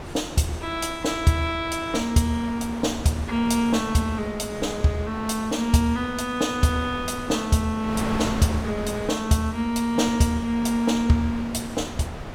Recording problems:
wind noise; below 980 Hz, SNR 12 dB

